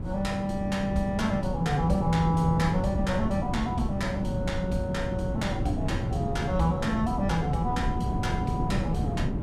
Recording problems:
wind on the microphone; below 230 Hz, SNR 2 dB

